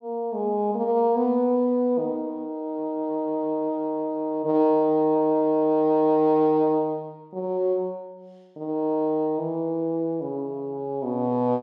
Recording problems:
none

